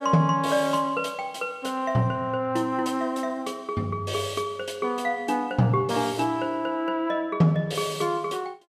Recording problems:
none

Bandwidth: 15 kHz